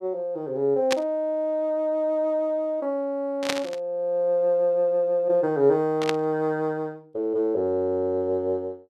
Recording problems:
static burst; at 1 s, at 3.5 s and at 6 s; peak +3 dB vs average level

